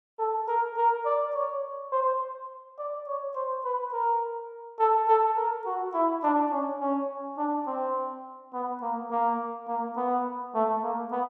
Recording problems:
none

